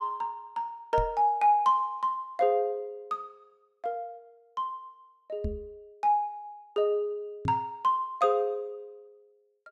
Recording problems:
microphone bump; at 1 s, at 5.5 s and at 7.5 s; peak -1 dB vs average level

